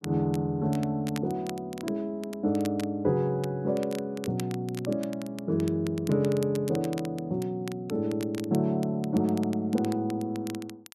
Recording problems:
crackling; vinyl, SNR 18 dB

